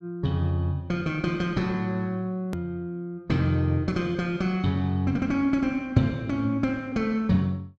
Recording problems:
click at an edit; at 2.5 s

